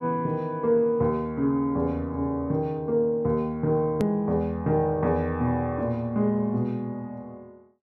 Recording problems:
hard cut with a click; at 4 s

